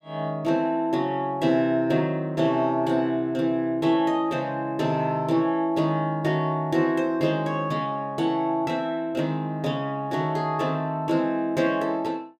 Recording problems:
none

